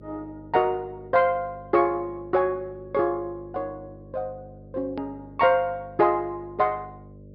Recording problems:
low-pass filter; nothing above 5.5 kHz
hum; 50 Hz, harmonics up to 600 Hz, SNR 21 dB
click at an edit; at 5 s

